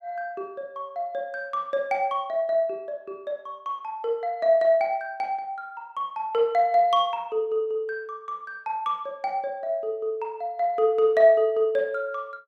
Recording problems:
none

